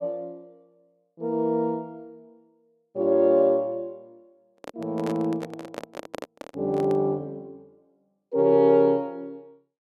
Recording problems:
microphone handling noise; from 4.5 to 7 s; peak -6 dB vs average level

